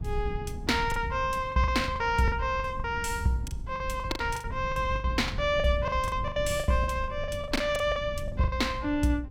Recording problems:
wind noise; below 100 Hz, SNR 9 dB
lost packets; 16% of the sound replaced, filled with the last packet

